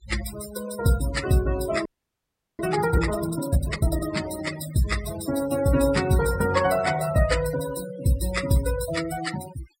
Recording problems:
denoising artefacts; signal-to-artefact ratio 11 dB
audio freezing; at 2 s for 0.5 s

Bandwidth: 16 kHz